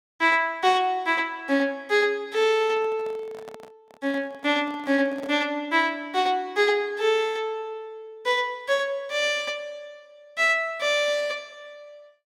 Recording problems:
microphone handling noise; from 2.5 to 5.5 s; peak -12 dB vs average level

